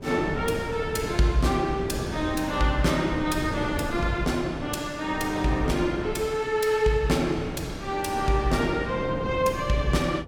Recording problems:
wind on the microphone; below 420 Hz, SNR 9 dB

